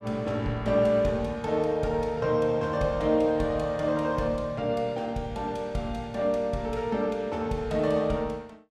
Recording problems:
none

